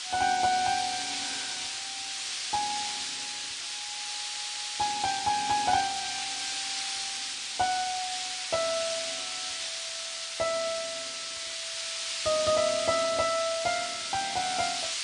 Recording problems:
lossy compression; MP3, log-spectral distance 15 dB, nothing above 8.5 kHz
hiss; SNR 2 dB
audio stuttering; at 4 s

